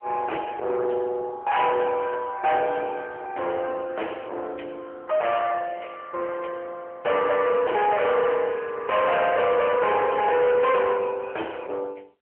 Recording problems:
phone line; 370 Hz to 3.2 kHz, AMR-NB
distortion; soft clipping, signal-to-distortion ratio 6 dB

